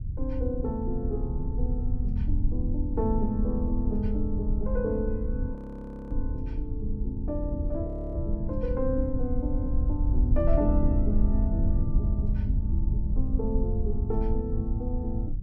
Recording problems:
low-frequency rumble; below 76 Hz, SNR -2 dB
audio freezing; at 5.5 s for 0.5 s and at 8 s

